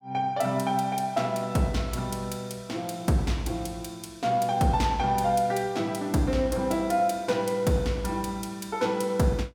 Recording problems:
none

